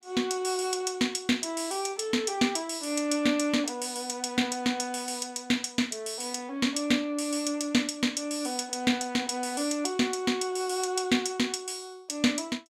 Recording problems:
none

